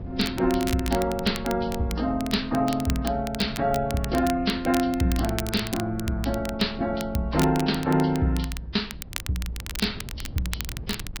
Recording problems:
lossy compression; Vorbis, log-spectral distance 3 dB
wind noise; below 150 Hz, SNR 15 dB
crackle; vinyl, SNR 12 dB

